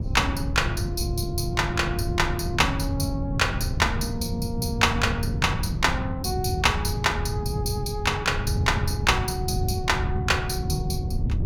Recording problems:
wind on the microphone; below 150 Hz, SNR 3 dB

